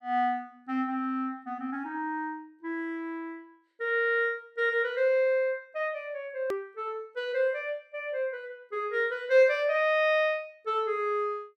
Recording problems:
click at an edit; at 6.5 s

